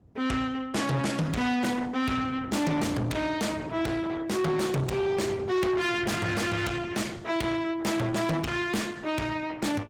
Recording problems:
lossy compression; Opus, log-spectral distance 4 dB, nothing above 19.5 kHz
distorted audio; soft clipping, signal-to-distortion ratio 6 dB
wind noise; below 340 Hz, SNR 12 dB

